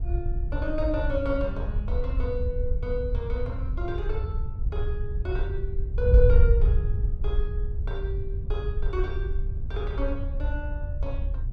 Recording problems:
wind on the microphone; below 70 Hz, SNR -5 dB

